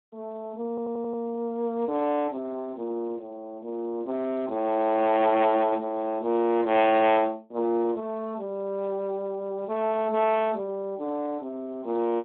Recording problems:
telephone audio; 190 Hz to 3.5 kHz, Speex
stutter; at 0.5 s

